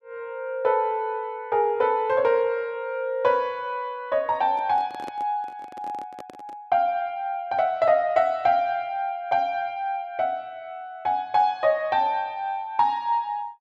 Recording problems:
handling noise; from 4.5 to 6.5 s; peak -10 dB vs average level

